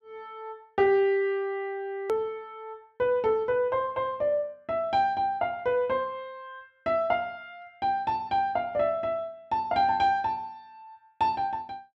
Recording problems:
hard cut with a click; at 2 s

